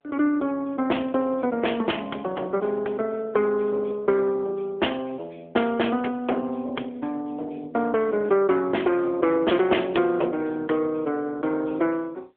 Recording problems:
phone line; 280 Hz to 3.4 kHz, AMR-NB

